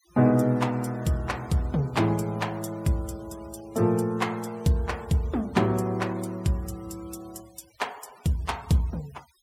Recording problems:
denoising artefacts; signal-to-artefact ratio 25 dB

